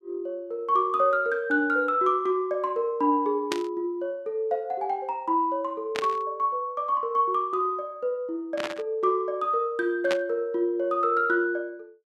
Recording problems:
burst of static; 4 times, first at 3.5 s; peak 0 dB vs average level

